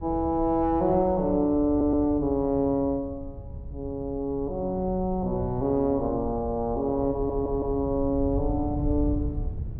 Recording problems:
wind noise; below 100 Hz, SNR 10 dB
stutter; at 1.5 s and at 7 s

